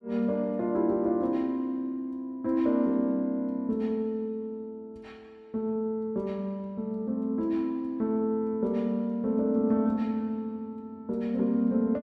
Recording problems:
none

